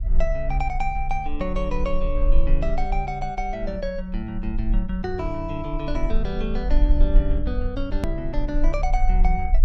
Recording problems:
low-frequency rumble; below 40 Hz, strongest tone 20 Hz, SNR -1 dB
edit click; at 8 s

